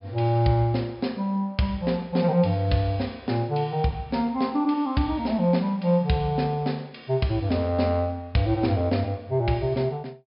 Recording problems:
low-pass filter; nothing above 5.5 kHz

